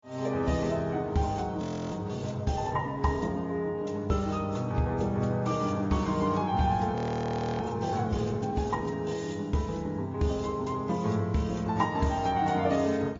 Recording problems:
codec artefacts; AAC, then MP3, log-spectral distance 3 dB, nothing above 7.1 kHz
frozen audio; at 1.5 s and at 7 s for 0.5 s

